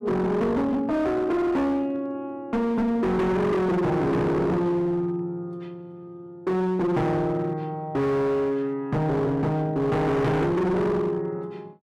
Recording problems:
distortion; hard clipping, signal-to-distortion ratio 7 dB

